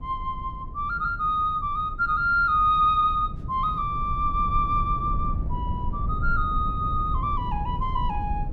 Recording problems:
low-frequency rumble; below 110 Hz, SNR 8 dB

